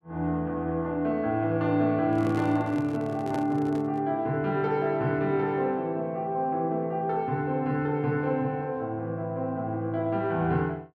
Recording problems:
microphone handling noise; from 2 to 4 s; peak -3 dB vs average level

